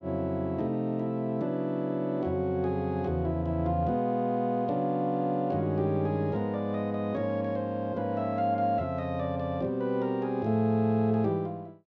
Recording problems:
none

